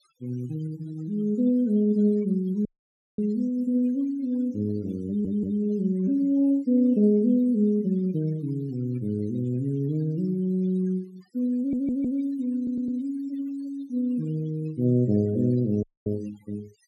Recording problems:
noise reduction artefacts; signal-to-artefact ratio 25 dB
dropout; at 2.5 s for 0.5 s and at 16 s
audio stuttering; at 5 s, at 12 s and at 13 s

